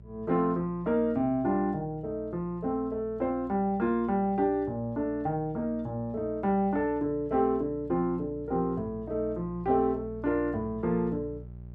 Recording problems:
hum; 60 Hz, harmonics up to 600 Hz, SNR 18 dB

